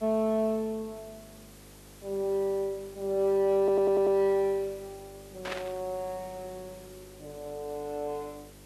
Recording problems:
hum; 50 Hz, harmonics up to 550 Hz, SNR 24 dB
background hiss; slope -1 dB per octave, SNR 24 dB
stutter; at 3.5 s
burst of static; at 5.5 s; peak -2 dB vs average level

